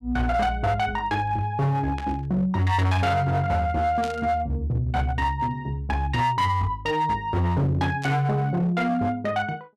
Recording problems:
distorted audio; hard clipping, signal-to-distortion ratio 10 dB
burst of static; at 2 s, at 4 s and at 8 s; peak -8 dB vs average level

